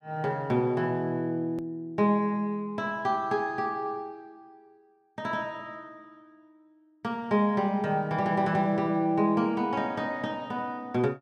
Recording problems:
hard cut with a click; at 1.5 s

